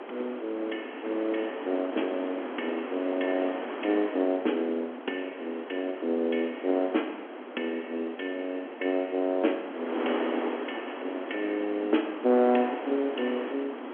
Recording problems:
phone line; 220 Hz to 3.4 kHz, G.711
wind noise; below 1.1 kHz, SNR 8 dB

